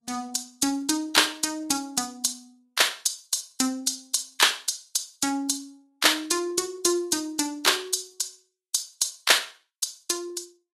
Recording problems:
codec artefacts; Vorbis, log-spectral distance 6 dB, nothing above 13.5 kHz

